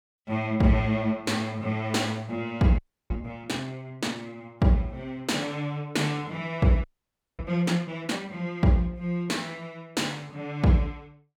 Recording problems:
audio freezing; at 3 s and at 7 s for 0.5 s

